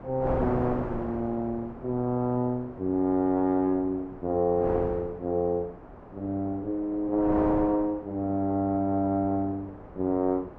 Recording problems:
wind noise; below 780 Hz, SNR 11 dB

